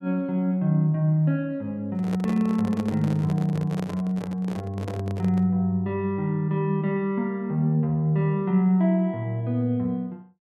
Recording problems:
microphone handling noise; from 2 to 5.5 s; peak -6 dB vs average level

